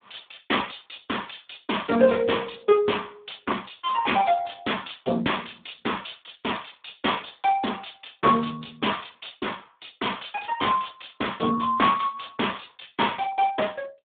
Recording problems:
phone line; 220 Hz to 3.6 kHz, Speex

